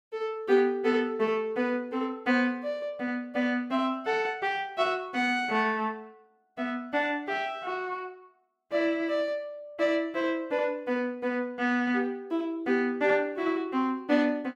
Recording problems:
none

